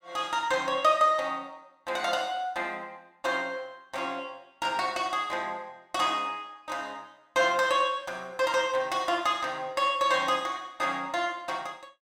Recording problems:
none

